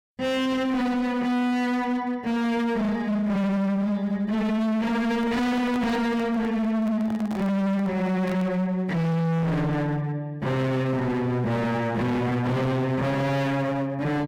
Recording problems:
distorted audio; hard clipping, signal-to-distortion ratio 6 dB
handling noise; from 5 to 8.5 s; peak -7 dB vs average level

